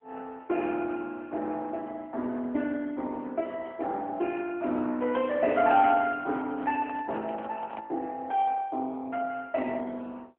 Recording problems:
phone line; 190 Hz to 3.5 kHz, AMR-NB
handling noise; from 5.5 to 8 s; peak -4 dB vs average level

